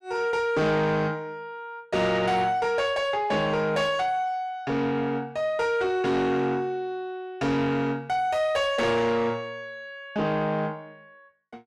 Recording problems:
distorted audio; soft clipping, signal-to-distortion ratio 12 dB

